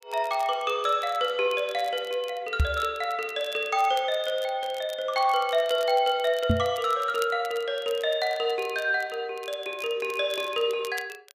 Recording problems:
crackle; vinyl, SNR 20 dB
microphone bump; at 2.5 s and at 6.5 s; peak +6 dB vs average level

